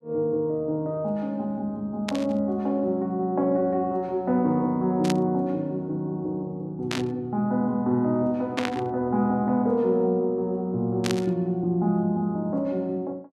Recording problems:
burst of static; 5 times, first at 2 s; peak 0 dB vs average level

